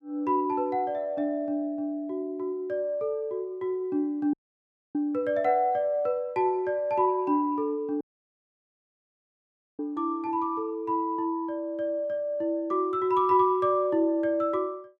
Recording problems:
dropout; at 4.5 s for 0.5 s and at 8 s for 2 s

